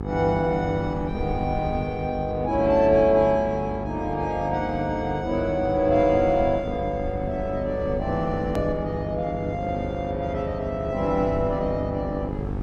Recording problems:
hum; 50 Hz, harmonics up to 1.4 kHz, SNR 9 dB
low-frequency rumble; below 110 Hz, SNR 13 dB
click at an edit; at 8.5 s

